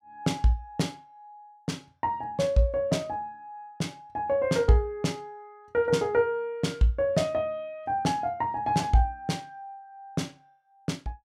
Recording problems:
none

